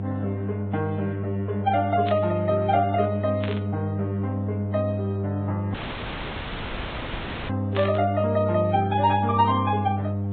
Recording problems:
treble cut off; nothing above 3.8 kHz
lossy codec; Vorbis, log-spectral distance 4 dB
electrical hum; 50 Hz, harmonics up to 700 Hz, SNR 3 dB
burst of static; at 2 s, at 3.5 s and at 8 s; peak -4 dB vs average level
audio cutting out; at 5.5 s for 2 s

